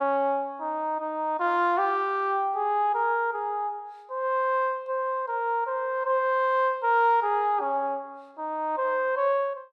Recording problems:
none

